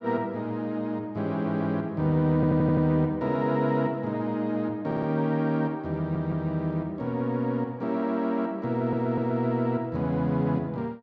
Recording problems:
stutter; 4 times, first at 2.5 s

